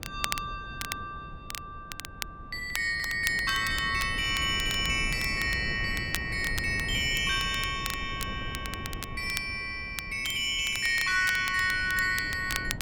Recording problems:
wind noise; below 220 Hz, SNR 13 dB
crackle; vinyl, SNR 11 dB

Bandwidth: 18 kHz